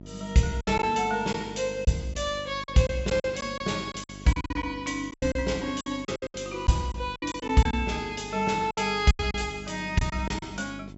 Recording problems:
low-pass filter; nothing above 7.7 kHz
hum; 50 Hz, harmonics up to 750 Hz, SNR 16 dB
lost packets; 11% of the sound replaced, filled with silence

